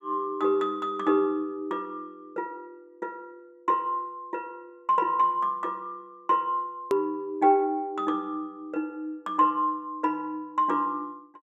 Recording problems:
hard cut with a click; at 7 s

